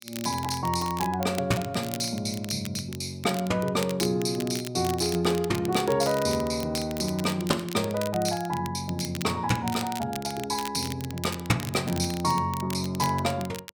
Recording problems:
crackle; vinyl, SNR 12 dB

